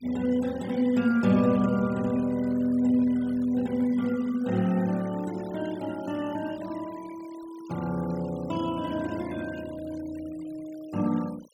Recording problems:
denoising artefacts; signal-to-artefact ratio 22 dB

